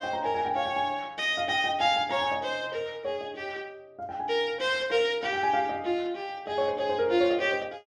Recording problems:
none

